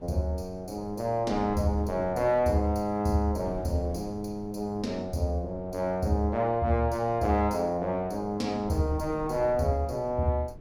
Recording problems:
wind on the microphone; below 230 Hz, SNR 17 dB

